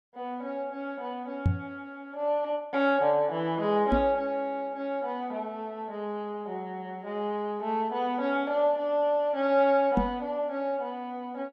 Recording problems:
microphone thump; at 1.5 s, at 4 s and at 10 s; peak +7 dB vs average level

